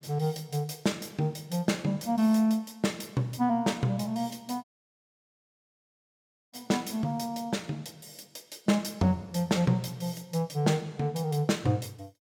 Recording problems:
audio cutting out; at 4.5 s for 2 s

